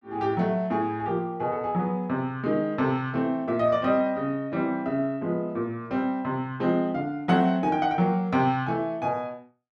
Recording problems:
none

